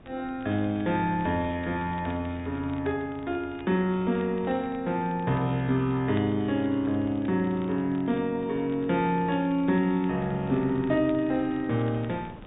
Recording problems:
treble missing; nothing above 4 kHz
wind on the microphone; below 480 Hz, SNR 22 dB
crackle; vinyl, SNR 27 dB

